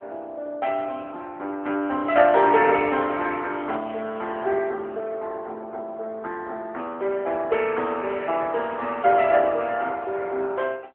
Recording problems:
phone line; 260 Hz to 3.6 kHz, AMR-NB

